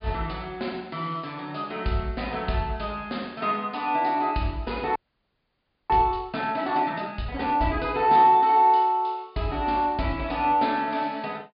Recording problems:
treble cut off; nothing above 4.9 kHz
audio freezing; at 5 s for 1 s

